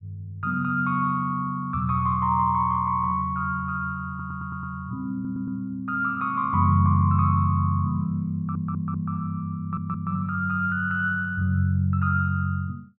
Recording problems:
audio stuttering; 4 times, first at 4 s

